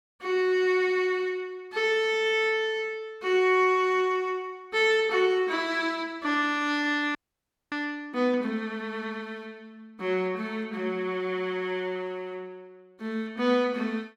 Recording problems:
audio freezing; at 7 s for 0.5 s

